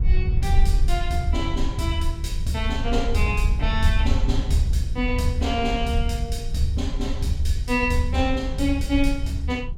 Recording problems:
rumble; below 68 Hz, SNR 1 dB

